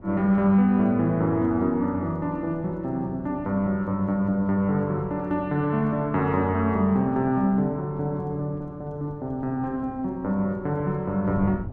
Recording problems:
wind on the microphone; below 270 Hz, SNR 19 dB

